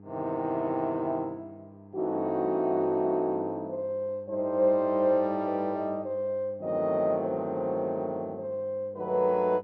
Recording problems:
hum; 50 Hz, harmonics up to 900 Hz, SNR 21 dB

